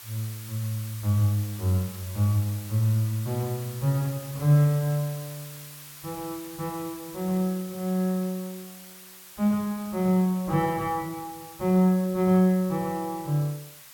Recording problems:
background hiss; slope +2 dB per octave, SNR 16 dB

